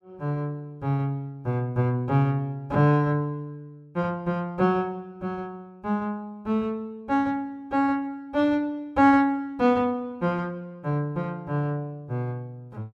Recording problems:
none

